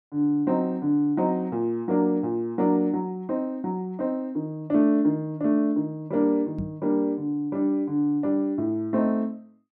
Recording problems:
microphone bump; at 6.5 s; peak -2 dB vs average level

